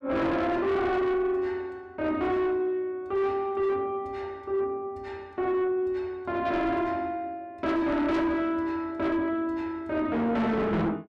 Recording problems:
distorted audio; soft clipping, signal-to-distortion ratio 8 dB

